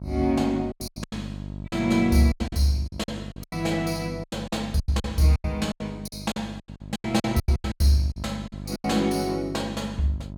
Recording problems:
mains hum; 50 Hz, harmonics up to 700 Hz, SNR 12 dB
lost packets; 17% of the sound replaced, filled with silence

